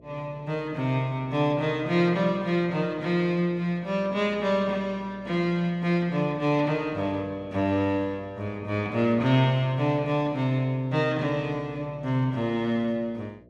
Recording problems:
electrical hum; 60 Hz, harmonics up to 660 Hz, SNR 24 dB

